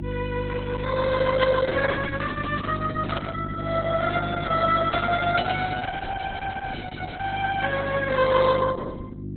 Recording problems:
lossy codec; Opus, log-spectral distance 5 dB, nothing above 4 kHz
hum; 50 Hz, harmonics up to 400 Hz, SNR 6 dB
burst of static; at 1.5 s, at 3 s and at 5 s; peak -2 dB vs average level

